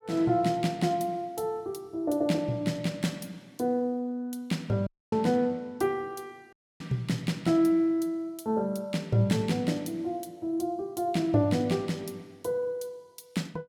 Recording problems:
audio cutting out; at 5 s and at 6.5 s

